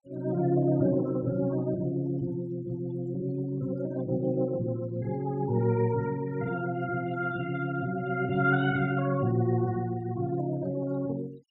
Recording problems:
noise reduction artefacts; signal-to-artefact ratio 25 dB

